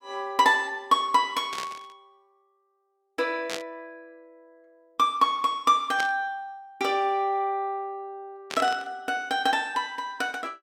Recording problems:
burst of static; 4 times, first at 1.5 s; peak -3 dB vs average level

